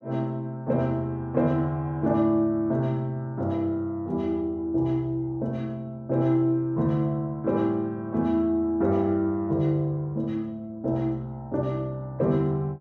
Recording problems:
none

